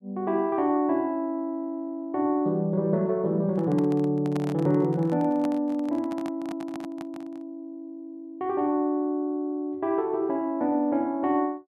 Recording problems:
microphone handling noise; from 3.5 to 7.5 s; peak -6 dB vs average level

